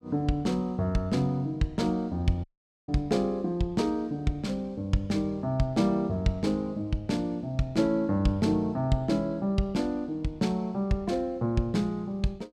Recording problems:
dropout; at 2.5 s

